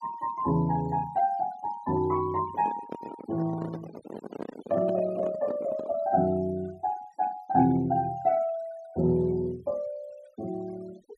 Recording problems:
noise reduction artefacts; signal-to-artefact ratio 21 dB
handling noise; from 2.5 to 6 s; peak -4 dB vs average level

